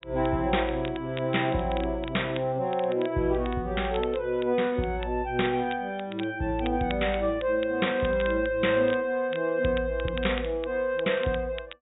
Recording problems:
treble cut off; nothing above 4 kHz
crackling; vinyl, SNR 18 dB

